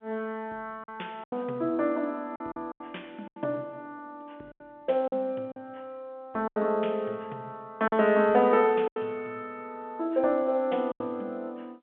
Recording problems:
phone line; 240 Hz to 3.6 kHz, G.711
lost packets; 7% of the sound replaced, filled with silence

